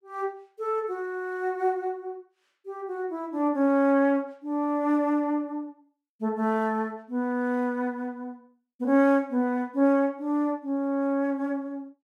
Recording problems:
none

